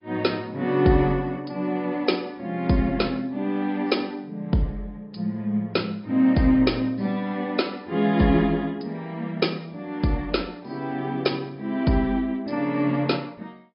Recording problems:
treble missing; nothing above 5.2 kHz
lossy codec; AAC, log-spectral distance 2 dB

